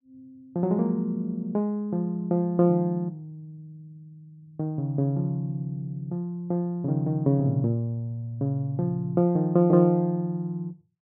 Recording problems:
none

